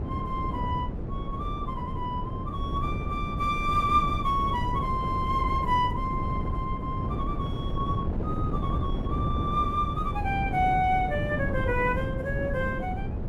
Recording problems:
wind on the microphone; below 230 Hz, SNR 2 dB

